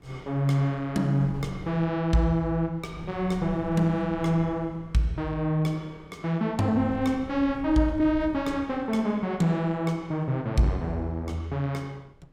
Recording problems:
wind on the microphone; below 160 Hz, SNR 19 dB

